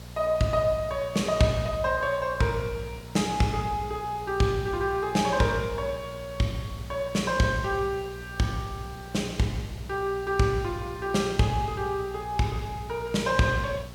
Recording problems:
electrical hum; 60 Hz, harmonics up to 660 Hz, SNR 16 dB
background hiss; slope -3 dB per octave, SNR 21 dB

